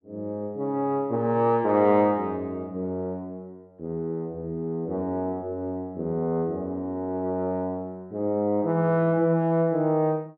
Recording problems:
none

